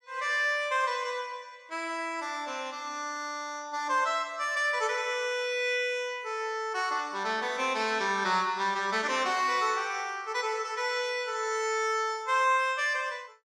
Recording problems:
none

